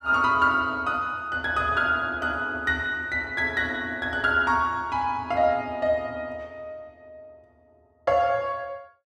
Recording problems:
none

